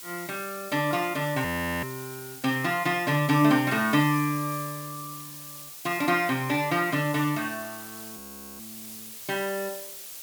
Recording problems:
hiss; slope +1 dB per octave, SNR 13 dB
audio freezing; at 1.5 s and at 8 s

